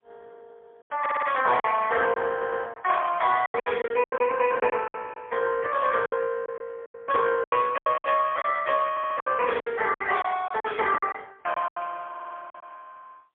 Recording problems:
phone line; 320 Hz to 3.3 kHz, AMR-NB, then MP3
lost packets; 12% of the sound replaced, filled with silence
stutter; 4 times, first at 1 s

